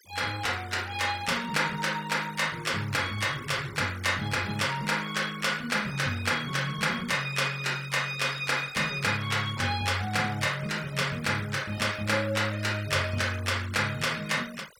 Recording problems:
denoising artefacts; signal-to-artefact ratio 17 dB

